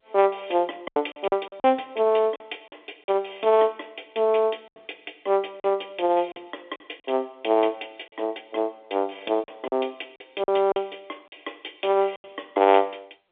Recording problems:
telephone audio; 260 Hz to 3.6 kHz, G.711
lost packets; 8% of the sound replaced, filled with silence

